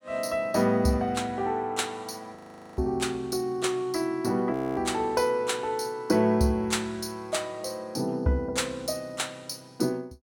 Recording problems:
audio freezing; at 2.5 s and at 4.5 s

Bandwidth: 17.5 kHz